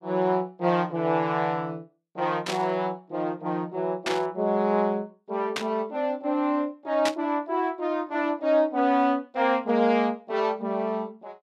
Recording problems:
burst of static; 4 times, first at 2.5 s; peak +2 dB vs average level

